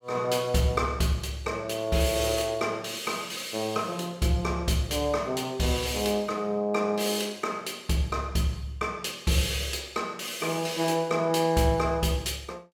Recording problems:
none

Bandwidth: 17 kHz